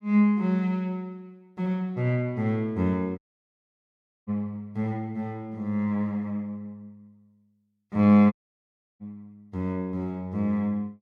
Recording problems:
dropout; at 3 s for 1 s and at 8.5 s for 0.5 s

